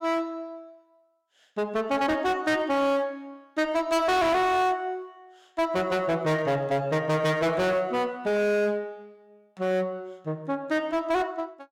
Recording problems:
distorted audio; hard clipping, signal-to-distortion ratio 6 dB

